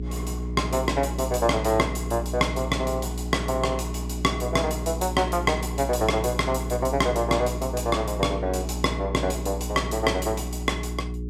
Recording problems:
electrical hum; 60 Hz, harmonics up to 420 Hz, SNR 6 dB

